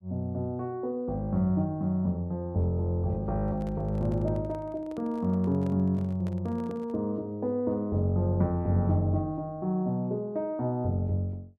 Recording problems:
microphone handling noise; from 3.5 to 7 s; peak -11 dB vs average level

